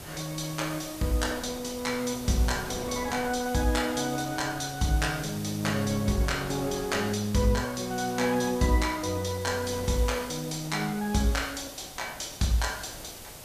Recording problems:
background hiss; SNR 14 dB
wind noise; below 830 Hz, SNR 16 dB

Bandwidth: 14.5 kHz